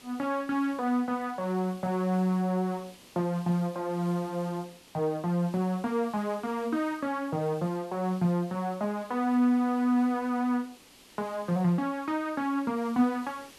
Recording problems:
background hiss; SNR 23 dB

